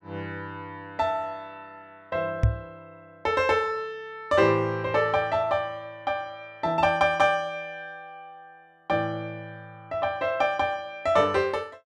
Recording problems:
knock on the microphone; at 2.5 s; peak +7 dB vs average level

